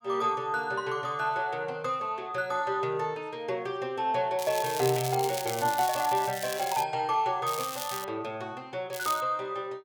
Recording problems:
crackle; from 4.5 to 7 s, at 7.5 s and at 9 s; loose cable, SNR 8 dB

